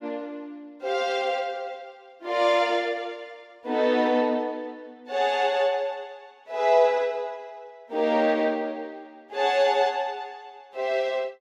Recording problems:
none

